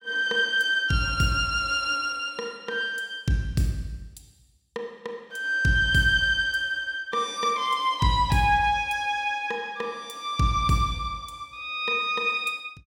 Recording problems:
none

